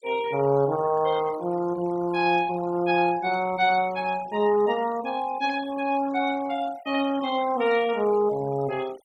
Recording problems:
noise reduction artefacts; signal-to-artefact ratio 19 dB

